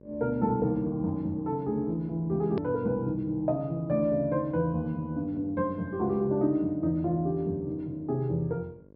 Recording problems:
treble missing; nothing above 5.3 kHz
electrical hum; 50 Hz, harmonics up to 1.1 kHz, SNR 24 dB
hard cut with a click; at 2.5 s

